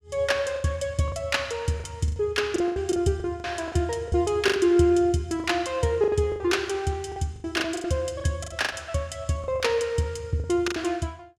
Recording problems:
lost packets; 13% of the sound replaced, filled with the last packet

